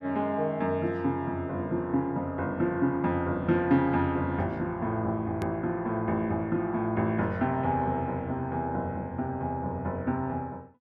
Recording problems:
click at an edit; at 5.5 s

